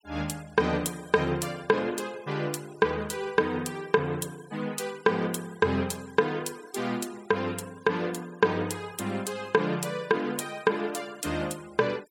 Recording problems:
denoising artefacts; signal-to-artefact ratio 22 dB

